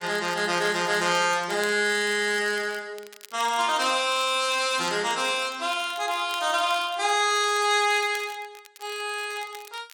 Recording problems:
lossy codec; AAC, then AAC, log-spectral distance 3 dB
crackling; vinyl, SNR 21 dB

